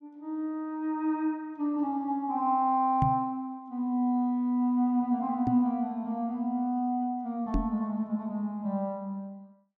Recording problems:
microphone thump; at 3 s, at 5.5 s and at 7.5 s; peak +5 dB vs average level

